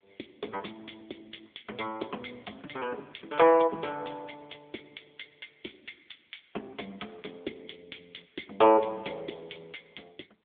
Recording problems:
phone line; 320 Hz to 3.5 kHz, AMR-NB

